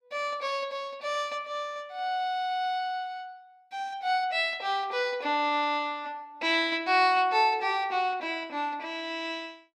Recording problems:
none

